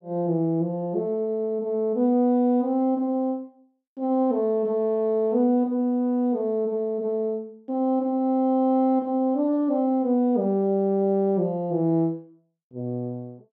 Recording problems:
none

